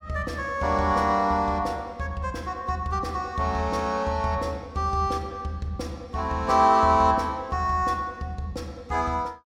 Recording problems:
none

